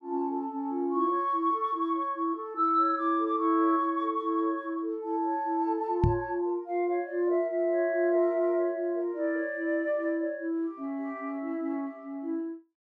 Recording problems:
microphone thump; at 6 s; peak +7 dB vs average level

